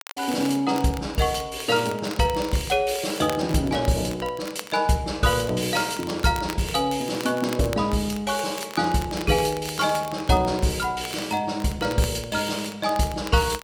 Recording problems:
crackling; vinyl, SNR 17 dB

